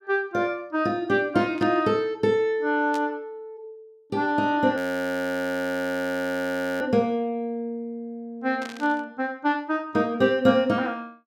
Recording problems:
static burst; at 1.5 s, at 3 s and at 8.5 s; peak -10 dB vs average level
frozen audio; at 5 s for 2 s

